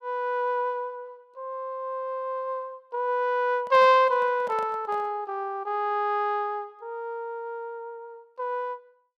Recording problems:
handling noise; from 3.5 to 5 s; peak -10 dB vs average level

